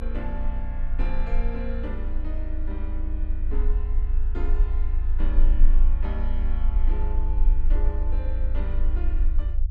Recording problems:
rumble; below 50 Hz, strongest tone 22 Hz, SNR -11 dB

